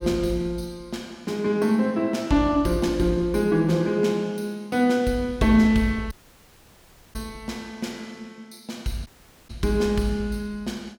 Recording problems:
audio cutting out; at 6 s for 1 s and at 9 s

